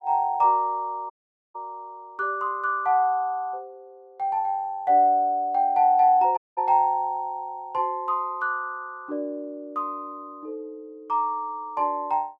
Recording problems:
dropout; at 1 s and at 6.5 s

